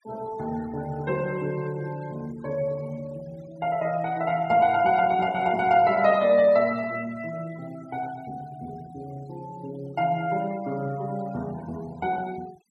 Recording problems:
noise reduction artefacts; signal-to-artefact ratio 24 dB

